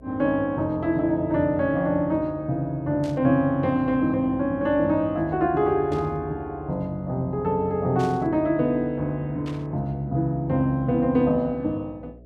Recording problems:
hum; 60 Hz, harmonics up to 660 Hz, SNR 23 dB
burst of static; 4 times, first at 3 s; peak -14 dB vs average level

